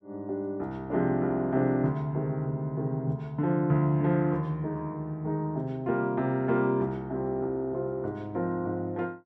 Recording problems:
none

